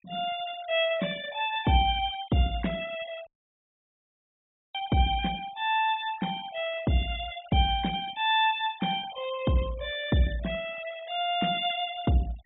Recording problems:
treble missing; nothing above 4 kHz
denoising artefacts; signal-to-artefact ratio 19 dB
dropout; at 3.5 s for 1.5 s

